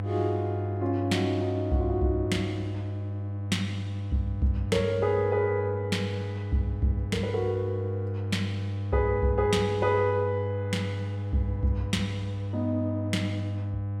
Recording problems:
hum; 50 Hz, harmonics up to 500 Hz, SNR 4 dB

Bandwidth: 16 kHz